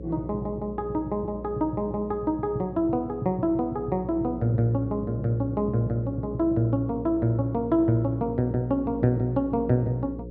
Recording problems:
electrical hum; 60 Hz, harmonics up to 540 Hz, SNR 13 dB

